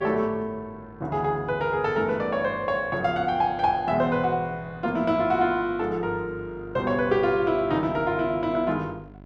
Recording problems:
hum; 50 Hz, harmonics up to 1.4 kHz, SNR 21 dB

